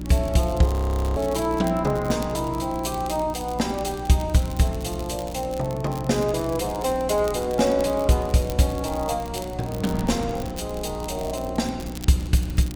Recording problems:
hum; 60 Hz, harmonics up to 360 Hz, SNR 11 dB
wind noise; below 330 Hz, SNR 16 dB
crackle; vinyl, SNR 19 dB
frozen audio; at 0.5 s

